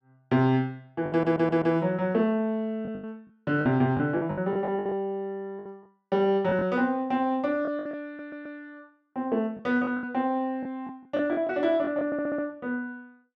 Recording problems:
lost packets; 9% of the sound replaced, filled with the last packet
stutter; at 1 s, at 8 s and at 12 s

